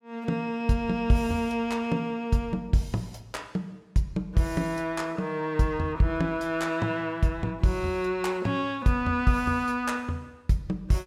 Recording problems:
none

